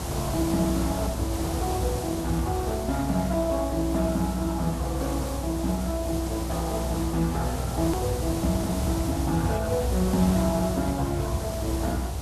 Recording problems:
codec artefacts; Speex, log-spectral distance 2 dB, nothing above 13.1 kHz
hum; 50 Hz, harmonics up to 500 Hz, SNR 21 dB
hiss; SNR 7 dB
rumble; below 100 Hz, strongest tone 62 Hz, SNR 5 dB
click at an edit; at 8 s

